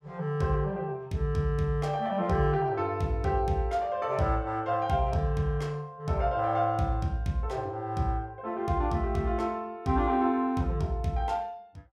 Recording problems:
none

